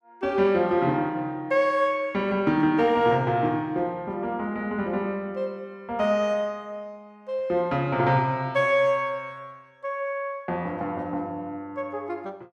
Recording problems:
none

